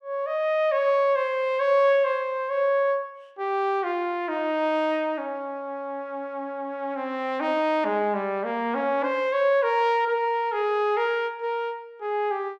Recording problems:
none

